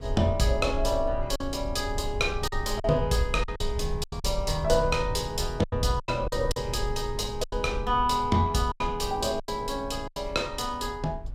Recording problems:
rumble; below 68 Hz, SNR 9 dB
lost packets; 8% of the sound replaced, filled with silence

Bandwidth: 16 kHz